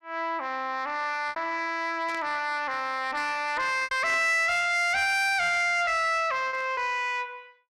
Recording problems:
distortion; soft clipping, signal-to-distortion ratio 10 dB
packet loss; 4% of the sound replaced, filled with repeated pitch periods
static burst; at 2 s, at 4 s and at 6.5 s; peak -14 dB vs average level

